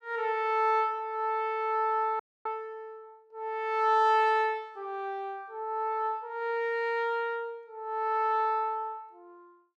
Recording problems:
audio cutting out; at 2 s

